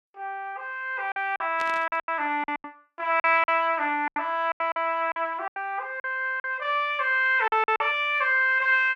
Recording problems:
lost packets; 11% of the sound replaced, filled with silence
static burst; at 1.5 s; peak -9 dB vs average level

